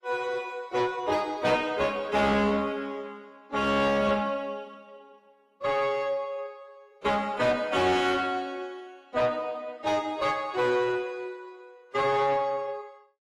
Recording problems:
lossy codec; AAC, then AAC, log-spectral distance 2 dB, nothing above 15.1 kHz
distorted audio; soft clipping, signal-to-distortion ratio 10 dB

